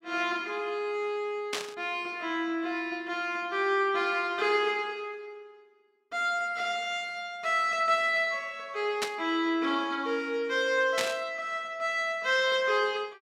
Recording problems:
burst of static; at 1.5 s, at 9 s and at 11 s; peak +3 dB vs average level

